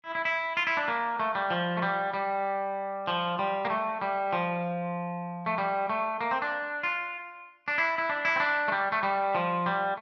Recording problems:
none

